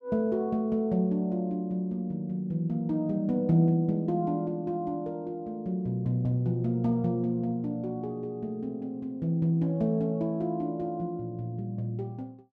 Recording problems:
none

